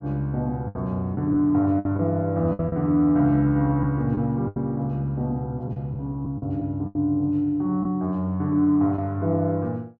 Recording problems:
packet loss; 6% of the sound replaced, filled with the last packet

